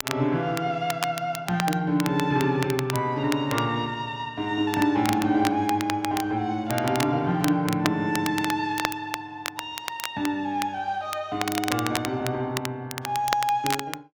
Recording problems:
crackle; vinyl, SNR 8 dB

